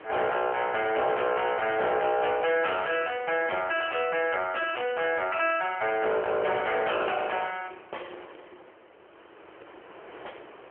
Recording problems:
telephone audio; 280 Hz to 3.2 kHz, AMR-NB
distortion; hard clipping, signal-to-distortion ratio 11 dB
wind on the microphone; below 1.6 kHz, SNR 20 dB

